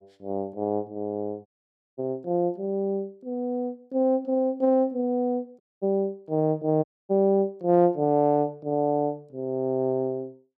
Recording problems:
audio cutting out; at 1.5 s for 0.5 s, at 5.5 s and at 7 s

